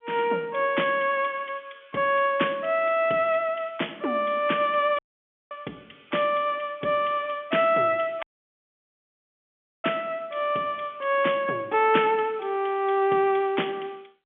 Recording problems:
phone line; 240 Hz to 3.4 kHz, G.711
dropout; at 5 s for 0.5 s and at 8 s for 1.5 s

